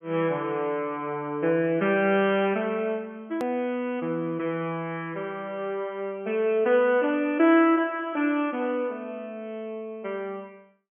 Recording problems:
treble missing; nothing above 3.3 kHz
hard cut with a click; at 3.5 s

